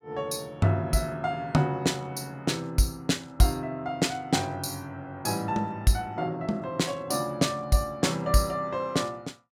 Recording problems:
none

